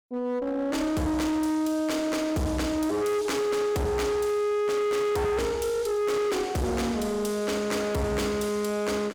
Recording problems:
distorted audio; hard clipping, uneven, signal-to-distortion ratio 7 dB

